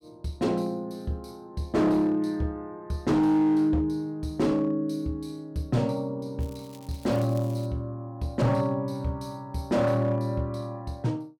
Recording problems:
distorted audio; hard clipping, signal-to-distortion ratio 11 dB
crackling; from 6.5 to 7.5 s; loose cable, SNR 25 dB

